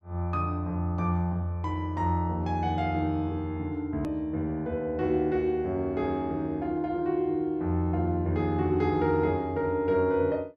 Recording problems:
edit click; at 4 s

